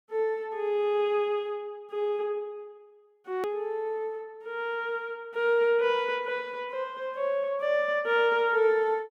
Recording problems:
edit click; at 3.5 s

